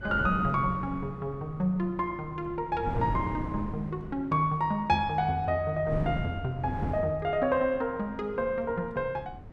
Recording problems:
wind on the microphone; below 270 Hz, SNR 10 dB

